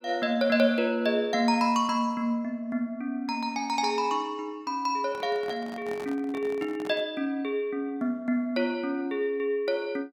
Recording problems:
handling noise; from 5 to 7 s; peak -9 dB vs average level

